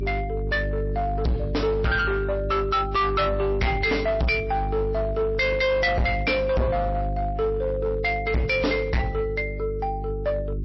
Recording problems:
lossy compression; MP3, log-spectral distance 2 dB, nothing above 5.7 kHz
distorted audio; hard clipping, signal-to-distortion ratio 6 dB
hum; 50 Hz, harmonics up to 400 Hz, SNR 7 dB

